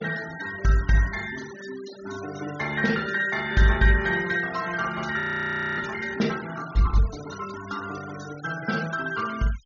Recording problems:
low-pass filter; nothing above 6.8 kHz
denoising artefacts; signal-to-artefact ratio 16 dB
frozen audio; at 5 s for 0.5 s

